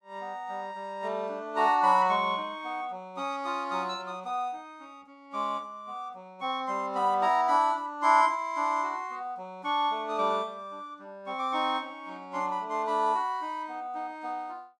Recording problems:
none

